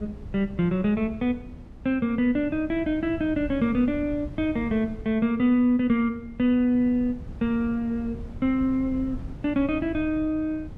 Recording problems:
wind on the microphone; below 160 Hz, SNR 16 dB

